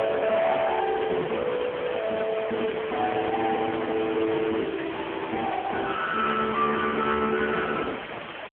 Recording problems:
phone line; 710 Hz to 3.3 kHz, AMR-NB
distorted audio; hard clipping, signal-to-distortion ratio 8 dB
background hiss; SNR 10 dB

